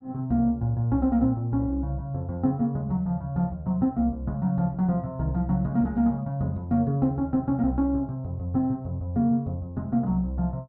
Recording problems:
none

